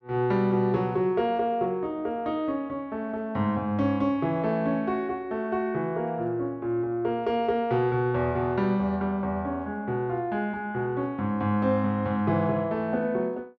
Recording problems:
none

